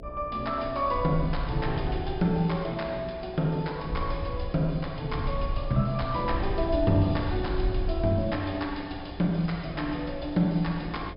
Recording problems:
treble missing; nothing above 5.5 kHz
hum; 60 Hz, harmonics up to 660 Hz, SNR 18 dB
wind noise; below 74 Hz, SNR 8 dB

